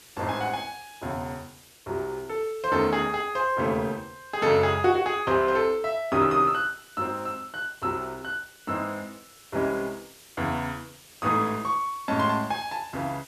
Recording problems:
hiss; SNR 23 dB

